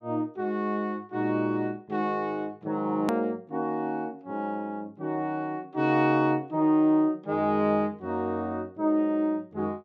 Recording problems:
edit click; at 3 s

